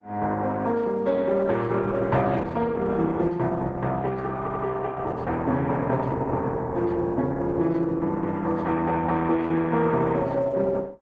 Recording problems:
codec artefacts; Opus, log-spectral distance 3 dB
audio stuttering; at 4.5 s

